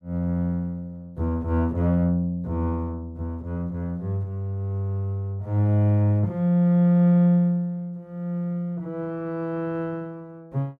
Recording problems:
none

